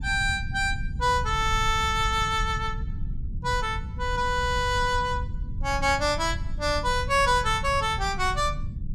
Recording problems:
low-frequency rumble; below 100 Hz, SNR 8 dB

